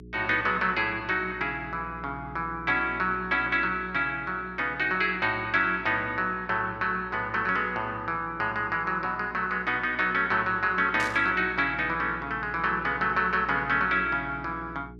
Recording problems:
hum; 60 Hz, harmonics up to 420 Hz, SNR 19 dB
burst of static; at 11 s; peak -8 dB vs average level

